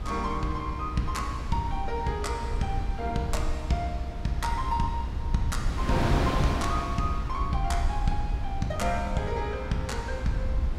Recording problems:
hum; 60 Hz, harmonics up to 720 Hz, SNR 21 dB
rumble; below 66 Hz, SNR 4 dB
wind noise; below 780 Hz, SNR 5 dB

